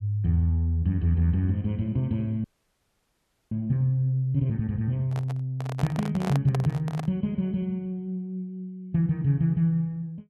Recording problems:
frozen audio; at 2.5 s for 1 s
microphone handling noise; from 5 to 7 s; peak -3 dB vs average level

